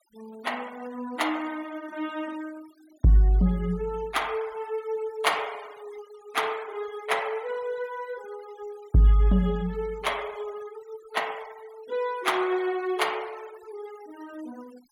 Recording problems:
noise reduction artefacts; signal-to-artefact ratio 22 dB

